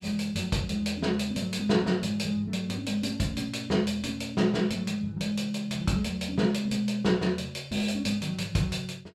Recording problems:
none

